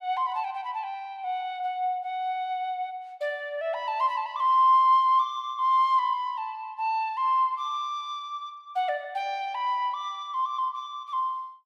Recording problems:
none

